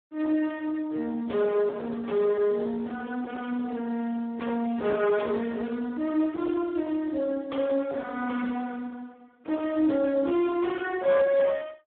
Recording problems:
telephone audio; 240 Hz to 2 kHz, Speex
distortion; soft clipping, signal-to-distortion ratio 14 dB

